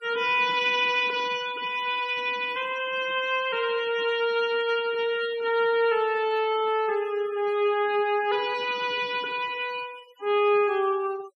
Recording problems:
denoising artefacts; signal-to-artefact ratio 19 dB

